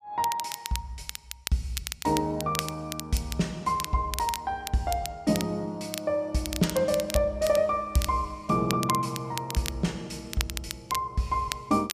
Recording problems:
crackling; vinyl, SNR 8 dB

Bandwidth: 14.5 kHz